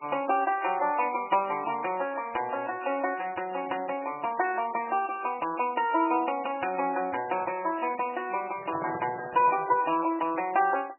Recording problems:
lossy codec; MP3, log-spectral distance 4 dB, nothing above 2.7 kHz
microphone handling noise; from 8.5 to 10 s; peak -5 dB vs average level

